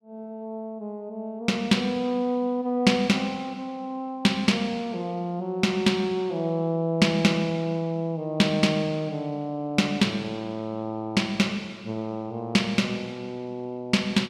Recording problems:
none

